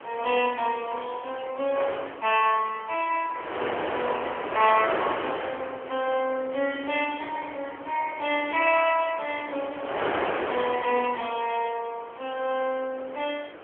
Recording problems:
telephone audio; 300 Hz to 3.3 kHz, AMR-NB
wind noise; below 1.5 kHz, SNR 7 dB

